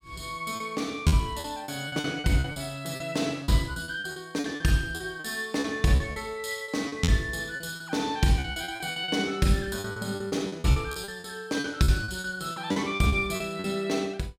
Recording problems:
lost packets; 15% of the sound replaced, filled with repeated pitch periods

